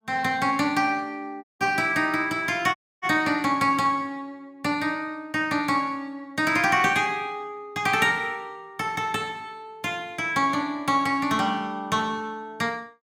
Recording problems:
dropout; at 1.5 s and at 3 s

